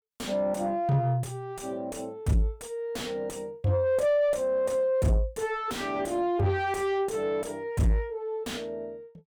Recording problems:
distortion; soft clipping, signal-to-distortion ratio 6 dB

